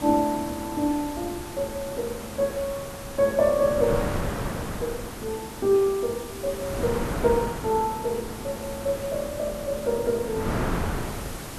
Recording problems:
hiss; slope -2 dB per octave, SNR 13 dB
wind noise; below 800 Hz, SNR 8 dB

